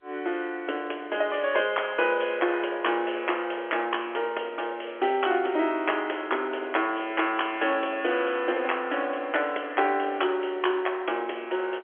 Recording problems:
telephone audio; 280 Hz to 3.4 kHz, G.711

